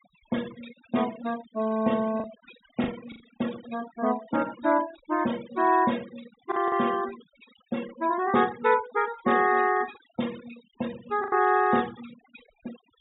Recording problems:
treble cut off; nothing above 4 kHz
noise reduction artefacts; signal-to-artefact ratio 17 dB
lost packets; 3% of the sound replaced, filled with the last packet

